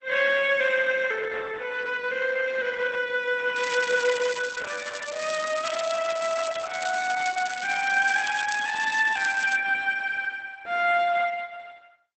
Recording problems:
lossy compression; Opus, log-spectral distance 7 dB, nothing above 8.2 kHz
crackling; from 3.5 to 9.5 s; loose cable, SNR 14 dB

